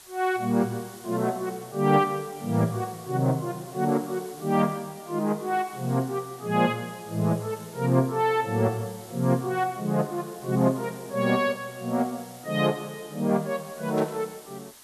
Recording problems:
background hiss; slope 0 dB per octave, SNR 20 dB
burst of static; at 14 s; peak -12 dB vs average level

